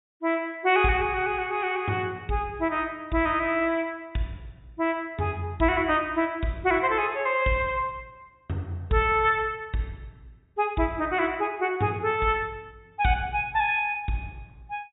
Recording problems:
treble missing; nothing above 4 kHz

